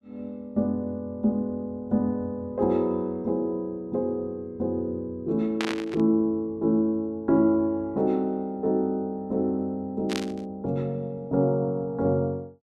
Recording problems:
burst of static; at 5.5 s and at 10 s; peak 0 dB vs average level

